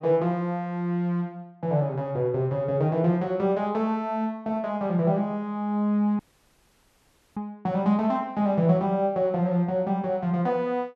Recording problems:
audio cutting out; at 6 s for 1 s

